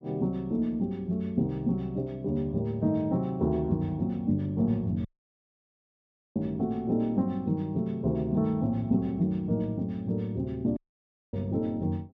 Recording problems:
audio cutting out; at 5 s for 1.5 s and at 11 s for 0.5 s

